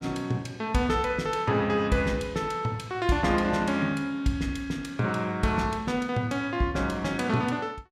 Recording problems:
none

